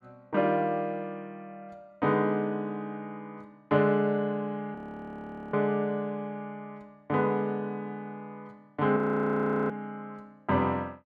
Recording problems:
frozen audio; at 5 s for 1 s and at 9 s for 0.5 s

